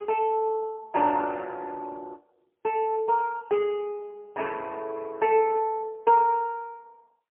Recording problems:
phone line; 260 Hz to 3.1 kHz, AMR-NB, then MP3

